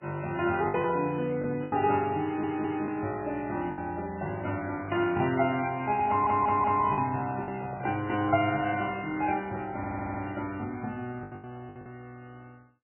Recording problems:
codec artefacts; MP3, log-spectral distance 3 dB, nothing above 2.5 kHz
packet loss; 6% of the sound replaced, filled with the last packet
audio stuttering; at 2 s, at 6 s and at 10 s
microphone handling noise; from 7.5 to 10 s; peak -11 dB vs average level

